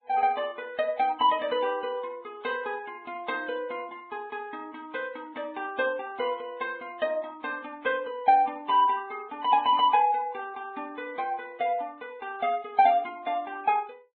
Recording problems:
treble missing; nothing above 4 kHz
lossy codec; Vorbis, log-spectral distance 2 dB

